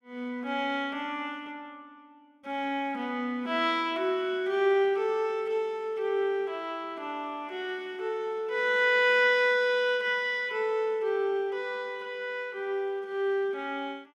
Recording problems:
none

